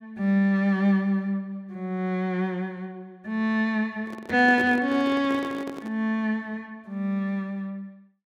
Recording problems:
microphone handling noise; from 4 to 6 s; peak -4 dB vs average level

